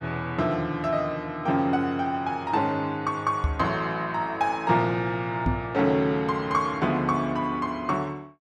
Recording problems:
microphone thump; at 3.5 s and at 5.5 s; peak +4 dB vs average level

